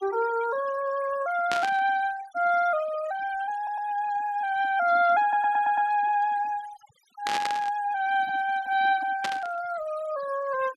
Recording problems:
noise reduction artefacts; signal-to-artefact ratio 17 dB
static burst; at 1.5 s, at 7.5 s and at 9 s; peak -1 dB vs average level
stutter; at 3.5 s and at 5 s

